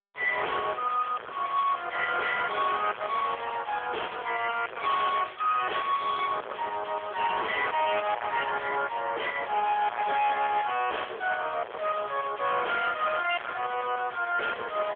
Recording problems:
telephone audio; 390 Hz to 3.3 kHz, AMR-NB
distortion; soft clipping, signal-to-distortion ratio 2 dB

